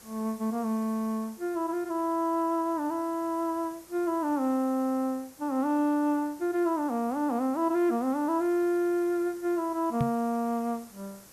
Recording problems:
hiss; SNR 23 dB
knock on the microphone; at 10 s; peak +3 dB vs average level

